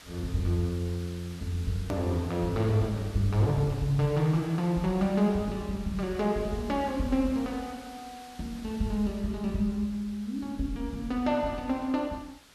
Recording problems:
background hiss; slope -1 dB per octave, SNR 20 dB
hard cut with a click; at 2 s

